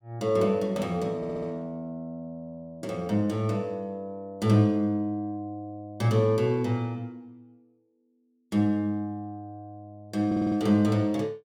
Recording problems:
stutter; at 1 s and at 10 s

